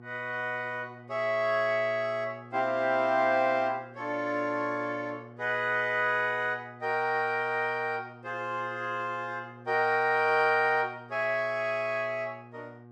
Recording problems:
hum; 60 Hz, harmonics up to 1.2 kHz, SNR 21 dB

